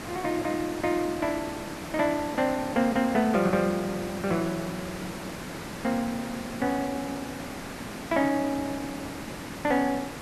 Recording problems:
background hiss; slope -5 dB per octave, SNR 9 dB

